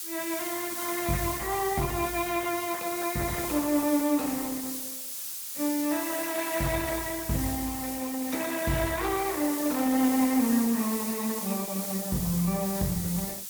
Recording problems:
lossy codec; Opus, log-spectral distance 4 dB
background hiss; slope +5 dB per octave, SNR 5 dB

